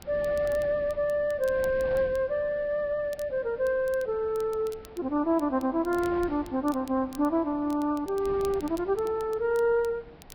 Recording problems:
codec artefacts; Vorbis, log-spectral distance 2 dB
wind on the microphone; below 730 Hz, SNR 19 dB
crackling; vinyl, SNR 25 dB

